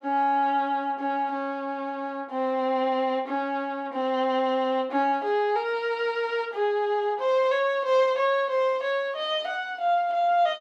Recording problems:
none

